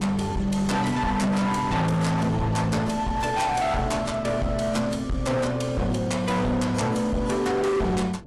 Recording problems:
lossy codec; AAC, log-spectral distance 2 dB, nothing above 11.6 kHz
distorted audio; hard clipping, signal-to-distortion ratio 7 dB
wind noise; below 360 Hz, SNR 15 dB

